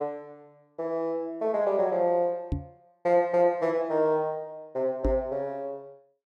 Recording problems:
microphone bump; at 2.5 s and at 5 s; peak +2 dB vs average level

